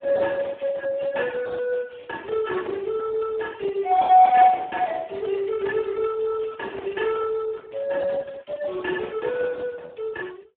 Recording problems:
phone line; 320 Hz to 2.2 kHz, Speex

